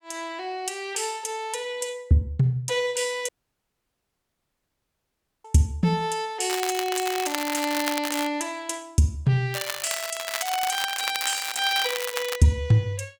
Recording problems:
dropout; at 3.5 s for 2 s
crackling; from 6.5 to 8.5 s and from 9.5 to 12 s; loose cable, SNR 5 dB

